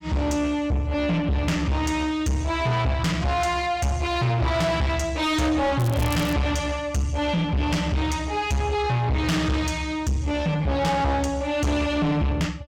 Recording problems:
distortion; soft clipping, signal-to-distortion ratio 6 dB
crackling; at 6 s; loose cable, SNR 16 dB

